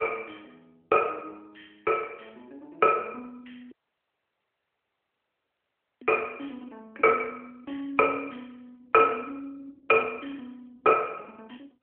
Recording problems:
telephone audio; 300 Hz to 3 kHz, AMR-NB
dropout; at 3.5 s for 2.5 s

